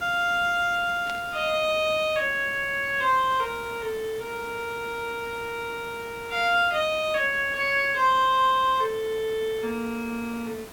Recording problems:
hiss; slope -4 dB per octave, SNR 18 dB
static burst; at 1 s; peak -9 dB vs average level

